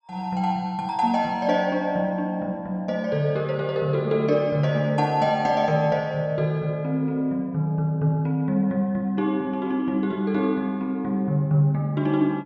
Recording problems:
none

